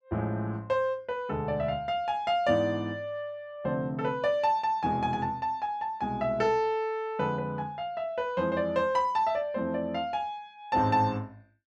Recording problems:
none

